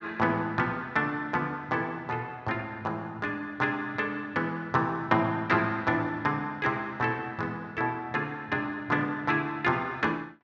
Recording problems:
none

